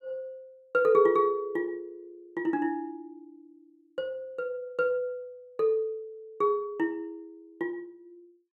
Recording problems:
none

